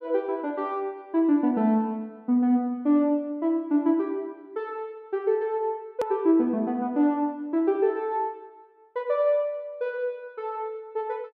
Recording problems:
edit click; at 6 s

